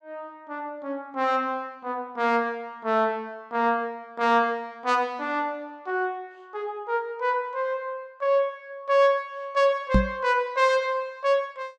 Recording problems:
microphone thump; at 10 s; peak +8 dB vs average level

